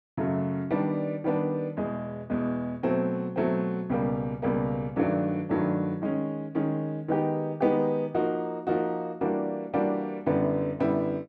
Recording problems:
none

